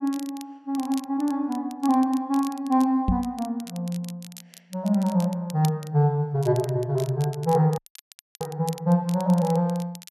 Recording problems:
crackling; vinyl, SNR 20 dB
knock on the microphone; at 3 s; peak +4 dB vs average level
dropout; at 8 s for 0.5 s

